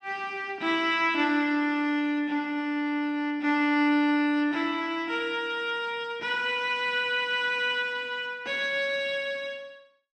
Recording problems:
none

